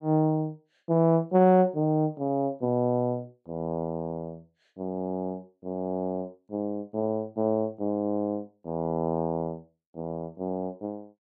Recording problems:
none

